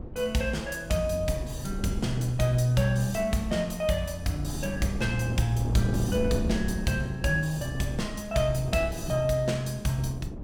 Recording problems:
wind noise; below 240 Hz, SNR 9 dB

